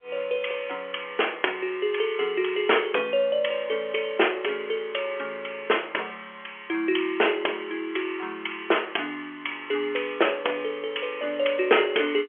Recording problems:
telephone audio; 300 Hz to 3.4 kHz, G.711

